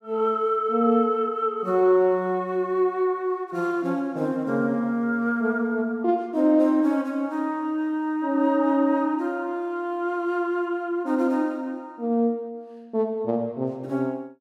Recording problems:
none

